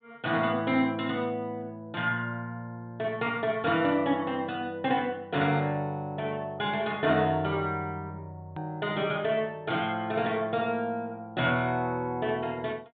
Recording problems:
low-pass filter; nothing above 4 kHz
click at an edit; at 8.5 s

